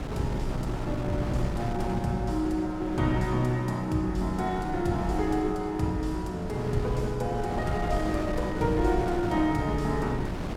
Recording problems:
wind noise; below 360 Hz, SNR 7 dB

